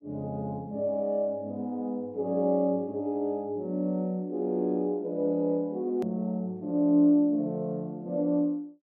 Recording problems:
click at an edit; at 6 s

